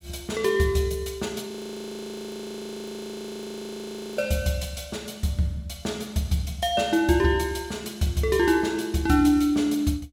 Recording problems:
audio freezing; at 1.5 s for 2.5 s

